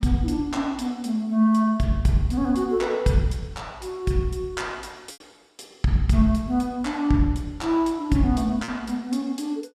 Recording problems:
lost packets; 0.9% of the sound replaced, filled with repeated pitch periods

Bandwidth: 14.5 kHz